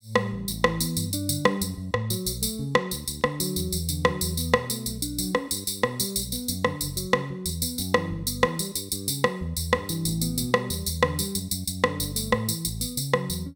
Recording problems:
none

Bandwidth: 17 kHz